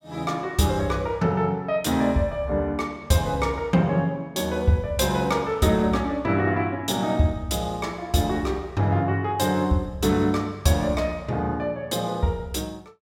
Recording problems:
none

